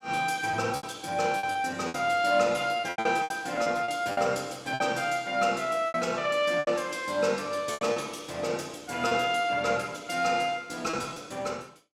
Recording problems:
lost packets; 9% of the sound replaced, filled with repeated pitch periods

